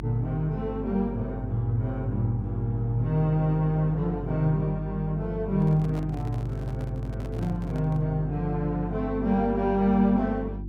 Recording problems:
hum; 50 Hz, harmonics up to 350 Hz, SNR 9 dB
handling noise; from 5.5 to 8 s; peak -11 dB vs average level

